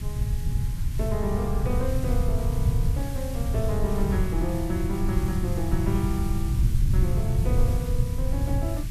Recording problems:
background hiss; slope +1 dB per octave, SNR 12 dB
low-frequency rumble; below 120 Hz, SNR -4 dB

